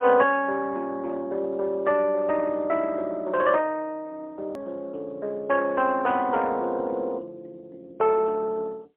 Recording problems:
phone line; 320 Hz to 3.3 kHz, AMR-NB, then MP3
click at an edit; at 4.5 s

